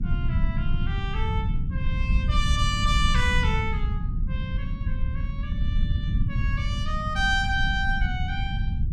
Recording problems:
low-frequency rumble; below 100 Hz, SNR -1 dB

